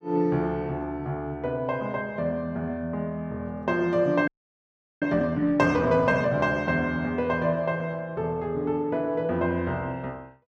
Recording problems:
audio freezing; at 4.5 s for 0.5 s

